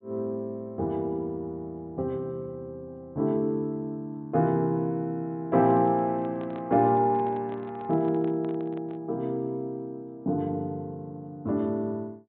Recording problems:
treble missing; nothing above 4 kHz
microphone handling noise; from 5.5 to 9 s; peak -11 dB vs average level

